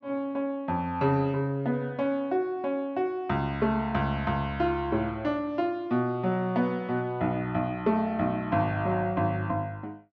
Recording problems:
none

